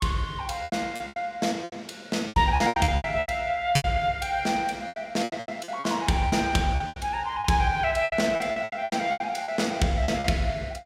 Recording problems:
lost packets; 17% of the sound replaced, filled with repeated pitch periods

